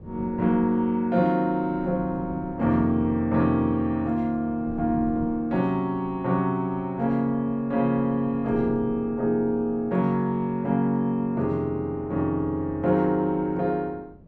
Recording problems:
wind on the microphone; below 260 Hz, SNR 19 dB

